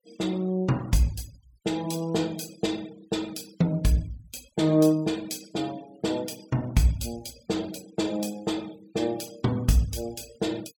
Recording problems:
denoising artefacts; signal-to-artefact ratio 21 dB

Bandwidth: 17 kHz